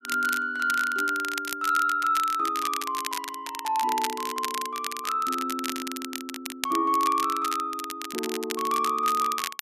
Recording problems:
crackle; vinyl, SNR 8 dB

